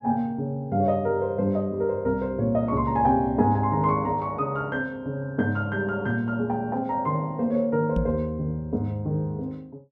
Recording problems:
microphone thump; at 8 s; peak +3 dB vs average level

